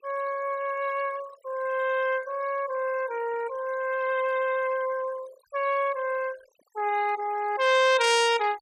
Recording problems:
noise reduction artefacts; signal-to-artefact ratio 19 dB

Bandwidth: 15 kHz